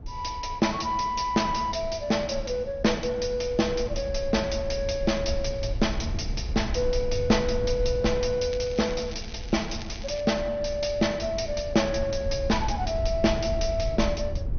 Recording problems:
codec artefacts; MP2, log-spectral distance 6 dB, nothing above 6.2 kHz
low-frequency rumble; below 84 Hz, SNR 9 dB
crackling; from 8.5 to 10 s; loose cable, SNR 17 dB

